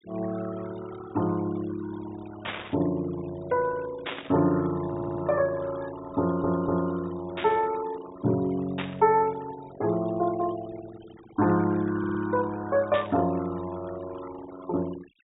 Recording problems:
low-pass filter; nothing above 4 kHz
denoising artefacts; signal-to-artefact ratio 17 dB
burst of static; 5 times, first at 2.5 s; peak -1 dB vs average level
audio stuttering; at 5 s, at 6 s and at 12 s

